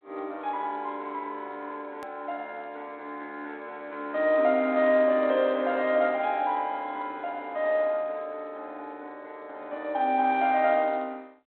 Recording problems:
telephone audio; 240 Hz to 3.8 kHz, G.726
hard cut with a click; at 2 s

